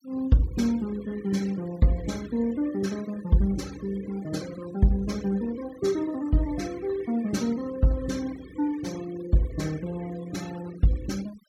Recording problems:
denoising artefacts; signal-to-artefact ratio 19 dB

